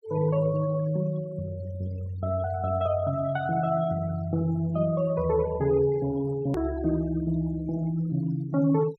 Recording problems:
denoising artefacts; signal-to-artefact ratio 21 dB
click at an edit; at 6.5 s

